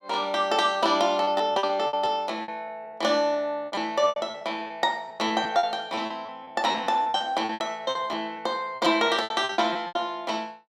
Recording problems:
packet loss; 15% of the sound replaced, filled with repeated pitch periods

